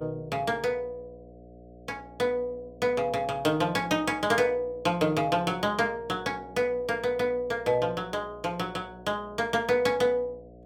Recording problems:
hum; 60 Hz, harmonics up to 720 Hz, SNR 22 dB

